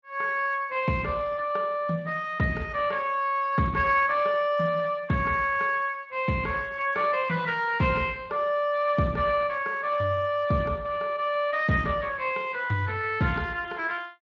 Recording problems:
lossy compression; Speex, log-spectral distance 3 dB

